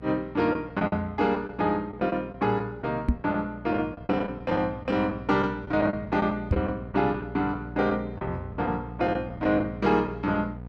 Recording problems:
hum; 60 Hz, harmonics up to 1 kHz, SNR 14 dB
lost packets; 8% of the sound replaced, filled with the last packet
knock on the microphone; at 3 s and at 6.5 s; peak +8 dB vs average level

